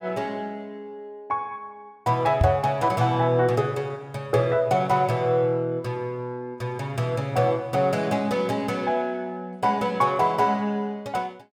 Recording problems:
microphone bump; at 2.5 s; peak +7 dB vs average level

